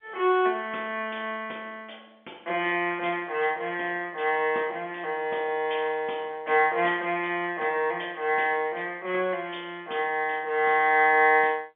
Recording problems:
telephone audio; 280 Hz to 3.5 kHz, G.711

